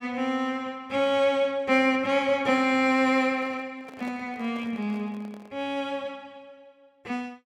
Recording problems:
microphone handling noise; from 3 to 5.5 s; peak -13 dB vs average level

